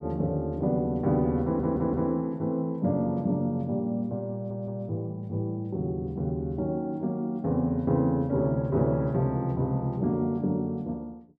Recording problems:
audio stuttering; at 1.5 s and at 4.5 s

